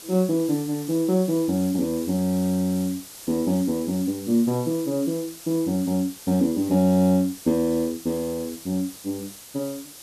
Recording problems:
background hiss; SNR 16 dB

